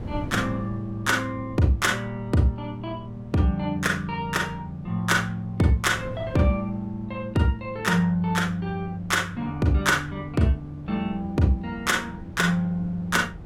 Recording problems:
wind on the microphone; below 250 Hz, SNR 18 dB

